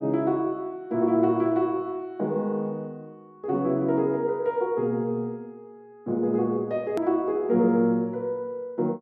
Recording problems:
hard cut with a click; at 7 s

